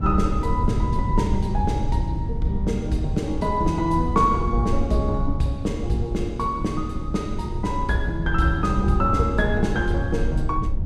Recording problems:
rumble; below 100 Hz, SNR 3 dB

